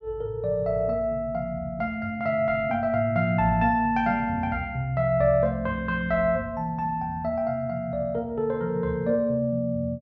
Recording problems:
none

